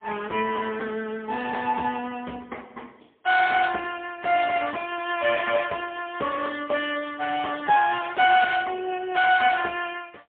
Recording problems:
phone line; 260 Hz to 3.4 kHz, AMR-NB, then MP3

